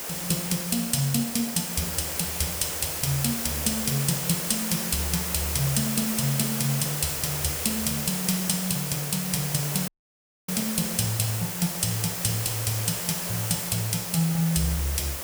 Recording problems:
background hiss; slope -2 dB per octave, SNR 2 dB
audio cutting out; at 10 s for 0.5 s

